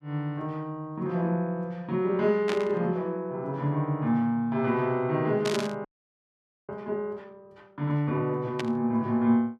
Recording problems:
static burst; at 2.5 s, at 5.5 s and at 8.5 s; peak 0 dB vs average level
frozen audio; at 6 s for 1 s

